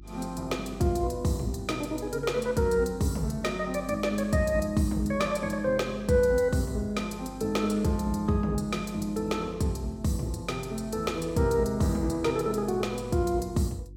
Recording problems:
hum; 50 Hz, harmonics up to 350 Hz, SNR 18 dB

